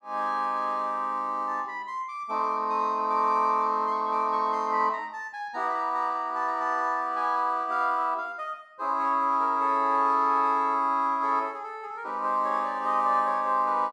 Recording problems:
none

